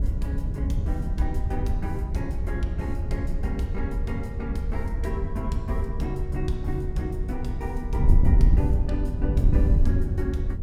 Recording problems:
wind on the microphone; below 86 Hz, SNR -6 dB

